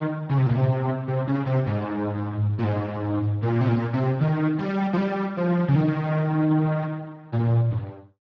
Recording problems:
lossy codec; Speex, log-spectral distance 3 dB

